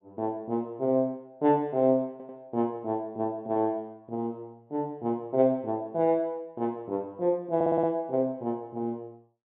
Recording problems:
treble cut off; nothing above 4 kHz
audio stuttering; at 2 s and at 7.5 s

